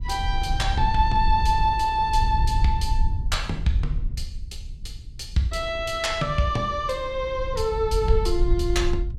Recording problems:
wind on the microphone; below 64 Hz, SNR 4 dB

